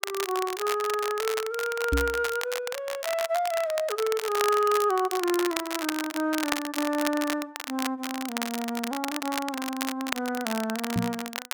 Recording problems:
crackle; vinyl, SNR 6 dB
microphone thump; at 2 s and at 11 s; peak +5 dB vs average level

